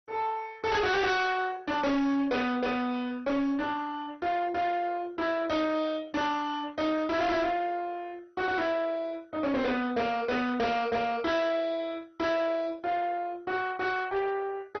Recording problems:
lossy compression; MP2, log-spectral distance 3 dB, nothing above 6 kHz
distortion; soft clipping, signal-to-distortion ratio 8 dB

